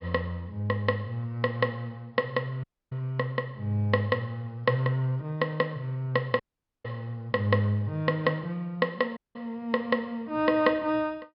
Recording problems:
treble cut off; nothing above 5.5 kHz
audio cutting out; at 2.5 s, at 6.5 s and at 9 s

